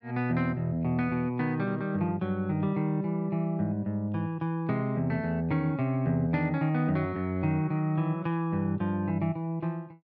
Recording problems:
none

